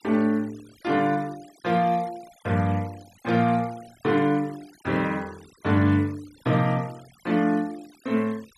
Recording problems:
denoising artefacts; signal-to-artefact ratio 24 dB

